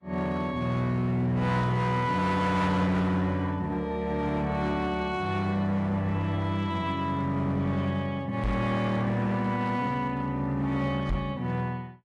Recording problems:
lossy compression; AAC, log-spectral distance 2 dB, nothing above 11.3 kHz
distorted audio; hard clipping, signal-to-distortion ratio 11 dB
knock on the microphone; at 8.5 s and at 11 s; peak +2 dB vs average level

